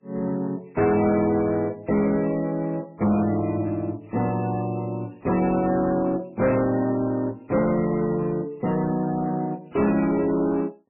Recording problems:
codec artefacts; MP3, then AAC, log-spectral distance 3 dB, nothing above 2.7 kHz
distorted audio; soft clipping, signal-to-distortion ratio 11 dB

